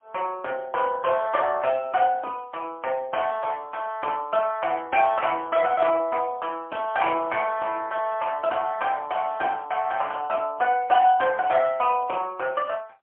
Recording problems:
telephone audio; 280 Hz to 3 kHz, AMR-NB, then MP3

